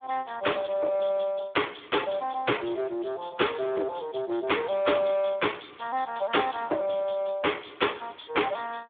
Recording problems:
phone line; 300 Hz to 3.6 kHz, Speex

